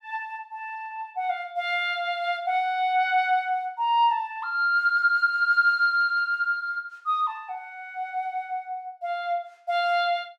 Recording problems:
none

